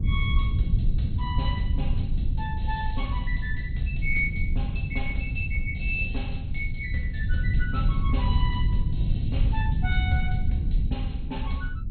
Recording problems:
lossy codec; MP2, log-spectral distance 2 dB, nothing above 3.9 kHz
low-frequency rumble; below 100 Hz, SNR -5 dB

